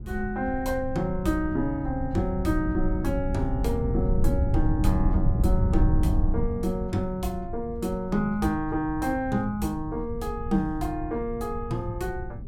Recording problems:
rumble; below 100 Hz, SNR 2 dB

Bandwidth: 16 kHz